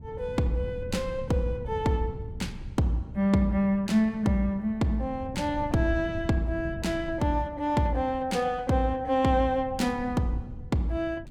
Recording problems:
wind noise; below 150 Hz, SNR 13 dB

